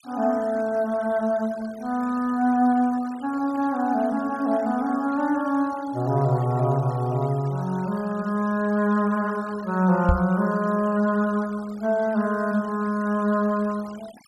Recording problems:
denoising artefacts; signal-to-artefact ratio 22 dB
microphone thump; at 10 s; peak +6 dB vs average level

